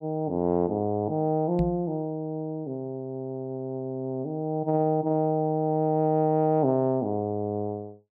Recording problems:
microphone bump; at 1.5 s; peak +2 dB vs average level

